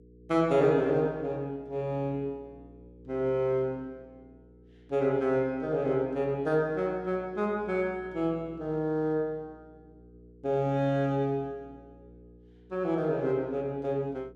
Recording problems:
hum; 60 Hz, harmonics up to 480 Hz, SNR 24 dB

